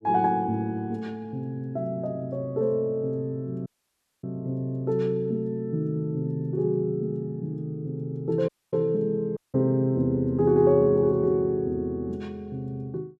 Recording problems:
audio cutting out; at 3.5 s for 0.5 s, at 8.5 s and at 9.5 s

